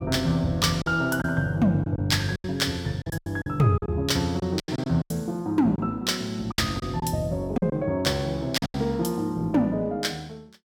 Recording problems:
lost packets; 9% of the sound replaced, filled with silence

